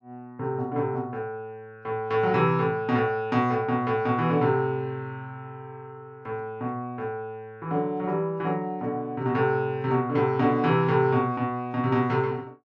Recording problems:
none

